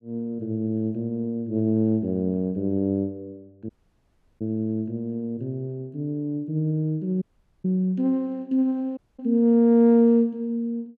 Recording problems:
audio cutting out; at 3.5 s for 0.5 s, at 7 s and at 9 s

